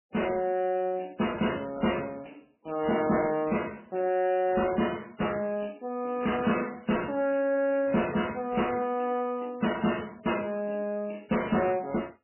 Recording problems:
codec artefacts; MP3, log-spectral distance 6 dB, nothing above 2.6 kHz
distorted audio; soft clipping, signal-to-distortion ratio 11 dB

